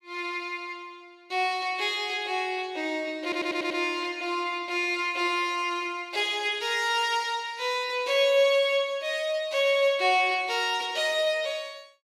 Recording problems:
stutter; at 3 s

